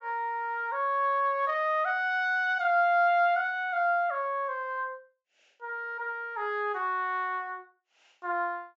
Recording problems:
low-pass filter; nothing above 8 kHz

